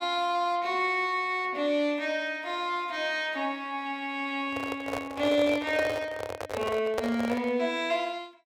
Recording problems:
microphone handling noise; from 4.5 to 7.5 s; peak +3 dB vs average level

